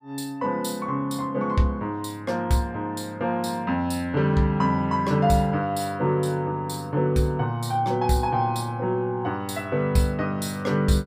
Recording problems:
none

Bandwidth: 15 kHz